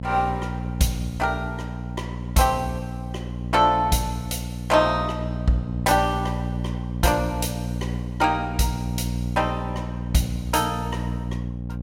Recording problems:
electrical hum; 60 Hz, harmonics up to 600 Hz, SNR 6 dB

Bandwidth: 16 kHz